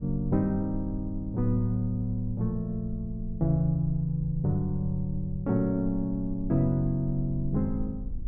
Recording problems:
rumble; below 54 Hz, strongest tone 18 Hz, SNR 13 dB

